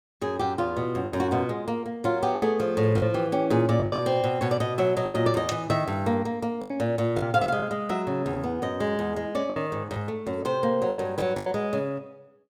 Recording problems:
packet loss; 7% of the sound replaced, filled with the last packet

